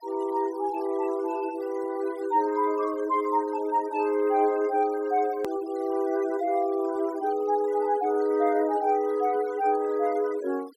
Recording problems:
denoising artefacts; signal-to-artefact ratio 22 dB
edit click; at 5.5 s

